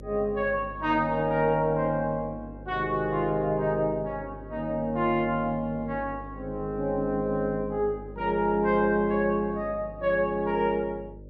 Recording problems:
electrical hum; 50 Hz, harmonics up to 600 Hz, SNR 17 dB

